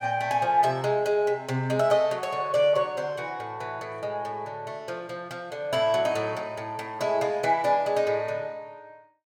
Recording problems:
none

